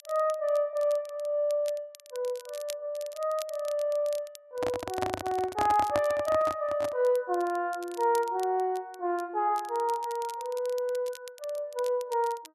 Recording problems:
crackle; vinyl, SNR 20 dB
microphone handling noise; from 4.5 to 7 s; peak +2 dB vs average level

